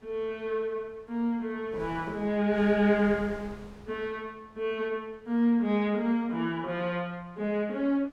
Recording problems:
wind noise; below 660 Hz, SNR 22 dB

